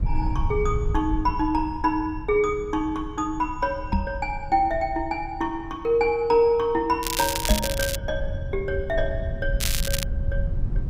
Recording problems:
rumble; below 88 Hz, SNR 7 dB
microphone thump; at 4 s and at 7.5 s; peak +6 dB vs average level
crackling; at 7 s and at 9.5 s; loose cable, SNR 3 dB

